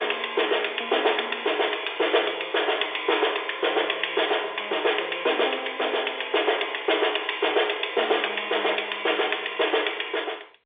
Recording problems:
phone line; 320 Hz to 3.6 kHz, G.711

